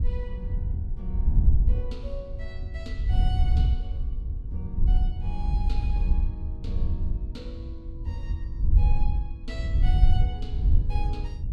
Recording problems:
wind on the microphone; below 68 Hz, SNR -12 dB

